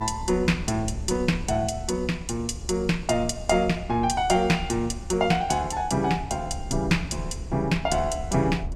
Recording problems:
rumble; below 90 Hz, SNR 12 dB

